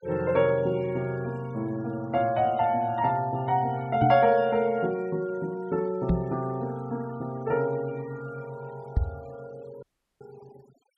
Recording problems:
noise reduction artefacts; signal-to-artefact ratio 26 dB
knock on the microphone; at 4 s, at 6 s and at 9 s; peak +5 dB vs average level
dropout; at 10 s

